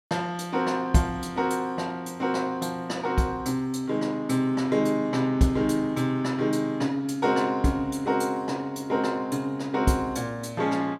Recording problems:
none

